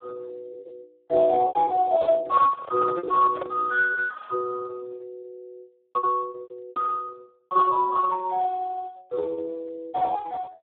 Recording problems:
phone line; 320 Hz to 2 kHz, Speex
packet loss; 14% of the sound replaced, filled with repeated pitch periods
microphone handling noise; from 2 to 3.5 s; peak -5 dB vs average level

